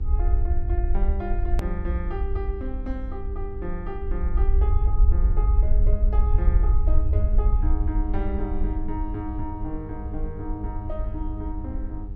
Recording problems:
hum; 50 Hz, harmonics up to 900 Hz, SNR 8 dB
rumble; below 60 Hz, SNR -8 dB
hard cut with a click; at 1.5 s

